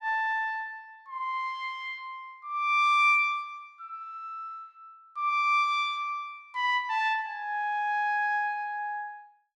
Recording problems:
none

